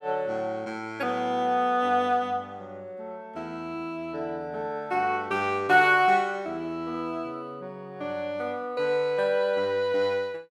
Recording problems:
none

